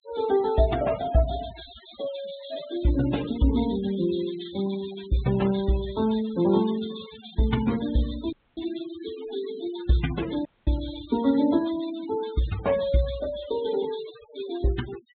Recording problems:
treble missing; nothing above 4 kHz
noise reduction artefacts; signal-to-artefact ratio 15 dB
dropout; at 8.5 s and at 10 s

